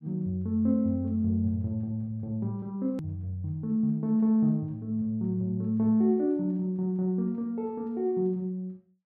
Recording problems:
edit click; at 3 s

